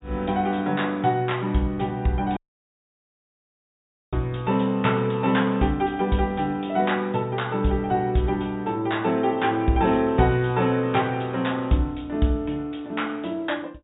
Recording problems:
low-pass filter; nothing above 4 kHz
dropout; at 2.5 s for 2 s

